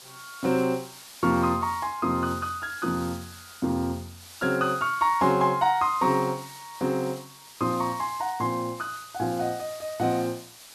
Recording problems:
hiss; slope +1 dB per octave, SNR 17 dB

